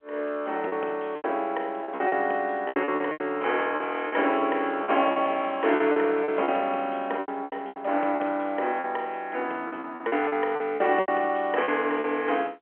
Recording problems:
telephone audio; 300 Hz to 3.2 kHz, G.711
lost packets; 12% of the sound replaced, filled with repeated pitch periods

